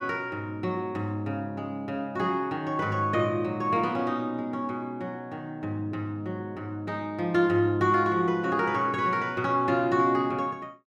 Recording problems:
none

